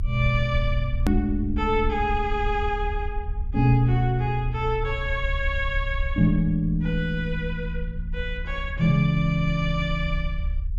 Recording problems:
low-frequency rumble; below 70 Hz, strongest tone 36 Hz, SNR 7 dB
click at an edit; at 1 s

